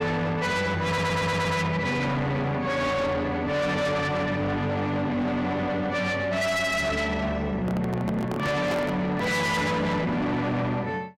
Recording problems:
distortion; soft clipping, signal-to-distortion ratio 7 dB
stutter; at 1 s
microphone handling noise; from 7.5 to 9.5 s; peak 0 dB vs average level

